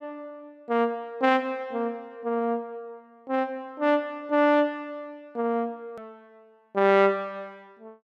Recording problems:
edit click; at 6 s

